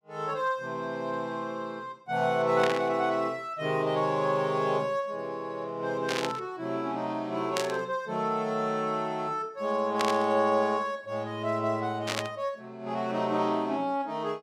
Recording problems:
static burst; 5 times, first at 2.5 s; peak +3 dB vs average level

